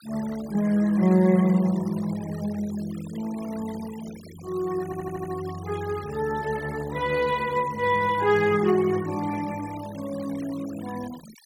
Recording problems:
noise reduction artefacts; signal-to-artefact ratio 20 dB
stutter; at 5 s

